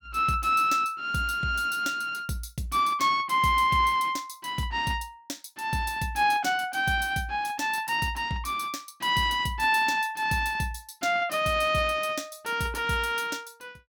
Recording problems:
none

